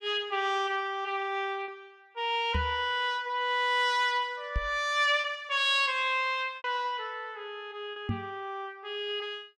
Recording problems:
packet loss; 2% of the sound replaced, filled with repeated pitch periods
knock on the microphone; at 2.5 s, at 4.5 s and at 8 s; peak +2 dB vs average level

